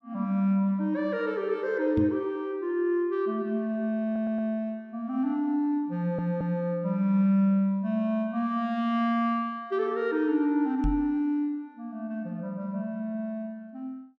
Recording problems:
knock on the microphone; at 2 s and at 11 s; peak +1 dB vs average level
audio stuttering; at 4 s and at 6 s

